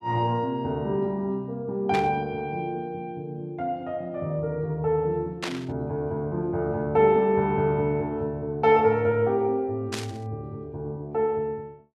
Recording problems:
static burst; at 2 s, at 5.5 s and at 10 s; peak -1 dB vs average level

